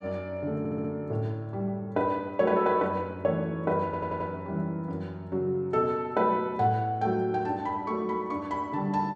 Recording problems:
audio stuttering; at 0.5 s and at 4 s

